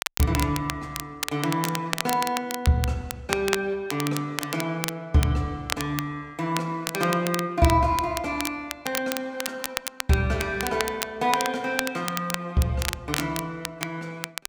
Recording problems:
crackling; vinyl, SNR 6 dB

